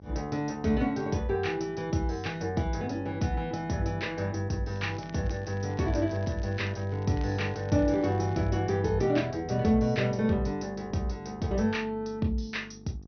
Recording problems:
treble cut off; nothing above 6.2 kHz
hum; 50 Hz, harmonics up to 850 Hz, SNR 19 dB
crackle; from 4.5 to 8.5 s; loose cable, SNR 26 dB

